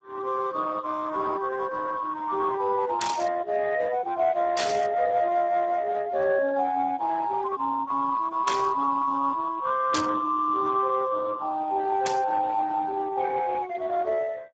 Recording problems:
lossy codec; Speex, log-spectral distance 4 dB
static burst; 5 times, first at 3 s; peak +1 dB vs average level

